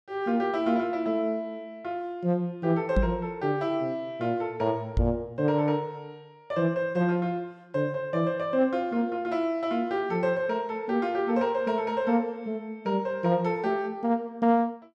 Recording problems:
knock on the microphone; at 3 s and at 5 s; peak +5 dB vs average level

